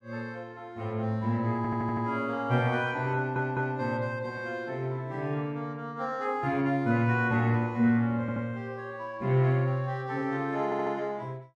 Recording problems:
stutter; 4 times, first at 1.5 s

